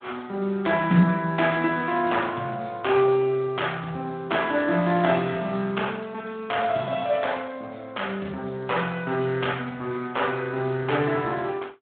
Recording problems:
phone line; 130 Hz to 3.6 kHz, Speex

